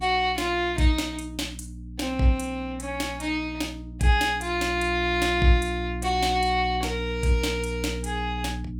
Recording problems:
electrical hum; 60 Hz, harmonics up to 300 Hz, SNR 10 dB

